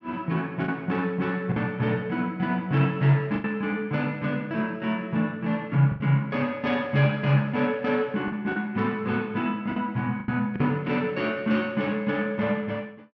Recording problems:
packet loss; 4% of the sound replaced, filled with the last packet

